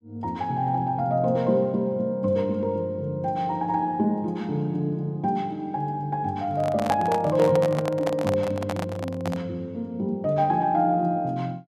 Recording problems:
handling noise; from 6.5 to 9.5 s; peak 0 dB vs average level

